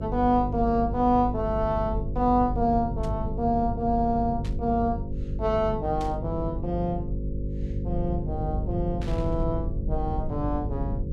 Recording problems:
hum; 50 Hz, harmonics up to 550 Hz, SNR 6 dB
rumble; below 110 Hz, SNR 9 dB
static burst; 4 times, first at 3 s; peak -12 dB vs average level

